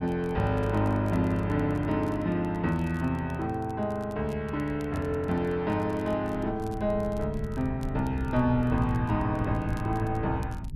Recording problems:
low-frequency rumble; below 130 Hz, SNR 12 dB
crackling; vinyl, SNR 29 dB

